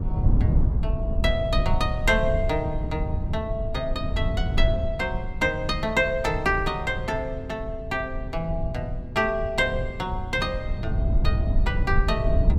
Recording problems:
rumble; below 100 Hz, SNR 2 dB

